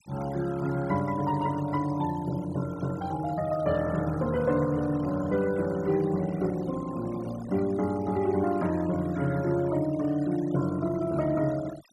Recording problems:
noise reduction artefacts; signal-to-artefact ratio 19 dB

